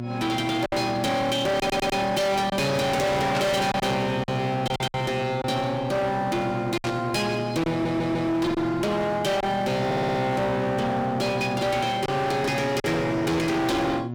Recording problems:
distorted audio; hard clipping, uneven, signal-to-distortion ratio 5 dB
hum; 60 Hz, harmonics up to 780 Hz, SNR 10 dB
lost packets; 4% of the sound replaced, filled with silence
audio stuttering; at 1.5 s, at 7.5 s and at 10 s
static burst; at 3.5 s and at 7 s; peak -3 dB vs average level

